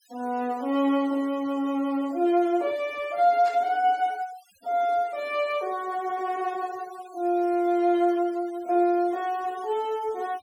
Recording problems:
noise reduction artefacts; signal-to-artefact ratio 25 dB
static burst; at 3.5 s; peak -14 dB vs average level

